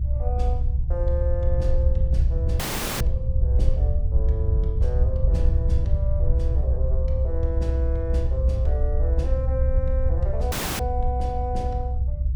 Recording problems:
rumble; below 70 Hz, SNR -9 dB
dropout; at 2.5 s and at 11 s

